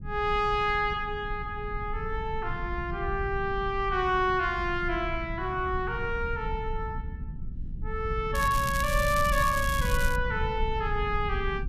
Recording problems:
low-frequency rumble; below 92 Hz, SNR 7 dB
crackling; from 8.5 to 10 s; loose cable, SNR 9 dB

